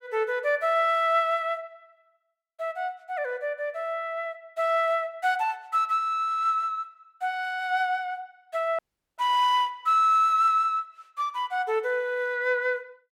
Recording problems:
audio cutting out; at 9 s

